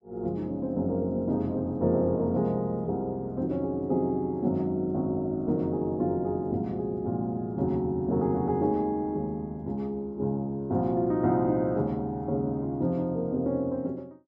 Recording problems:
none

